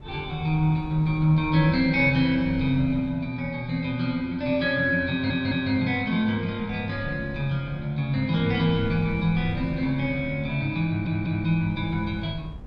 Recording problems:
wind on the microphone; below 130 Hz, SNR 17 dB
stutter; at 5 s and at 11 s

